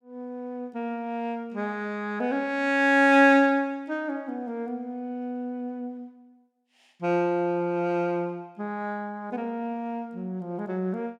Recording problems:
none

